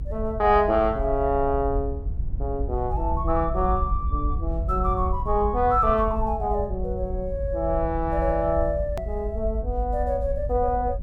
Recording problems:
low-frequency rumble; below 74 Hz, SNR 5 dB
click at an edit; at 9 s

